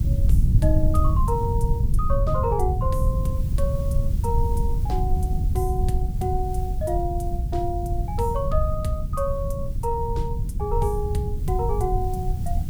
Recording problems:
hiss; SNR 22 dB
rumble; below 100 Hz, SNR -3 dB

